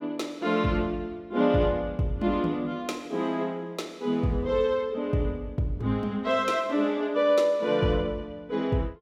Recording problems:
none

